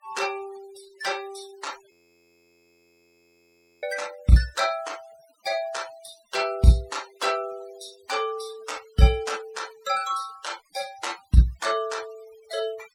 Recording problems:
noise reduction artefacts; signal-to-artefact ratio 20 dB
audio freezing; at 2 s for 2 s

